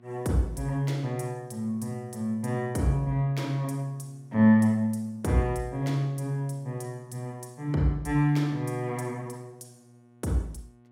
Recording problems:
hum; 60 Hz, harmonics up to 1.4 kHz, SNR 28 dB

